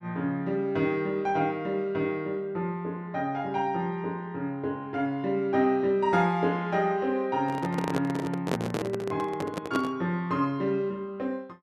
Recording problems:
handling noise; from 7.5 to 10 s; peak +3 dB vs average level

